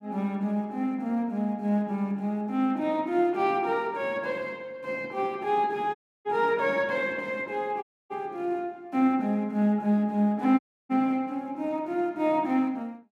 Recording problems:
audio cutting out; at 6 s, at 8 s and at 11 s

